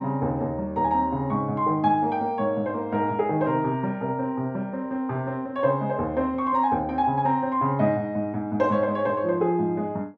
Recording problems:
none

